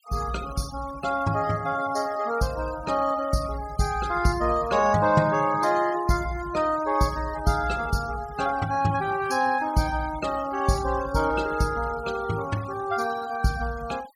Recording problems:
noise reduction artefacts; signal-to-artefact ratio 18 dB

